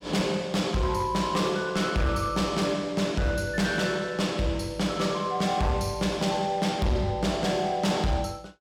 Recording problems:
distortion; hard clipping, signal-to-distortion ratio 11 dB

